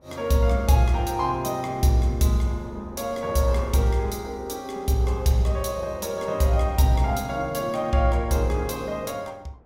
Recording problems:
wind noise; below 570 Hz, SNR 24 dB

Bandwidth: 16 kHz